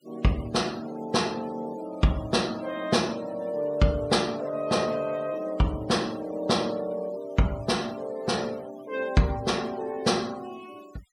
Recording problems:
noise reduction artefacts; signal-to-artefact ratio 21 dB

